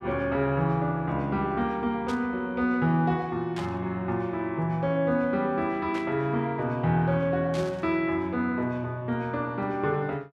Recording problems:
burst of static; 4 times, first at 2 s; peak -8 dB vs average level

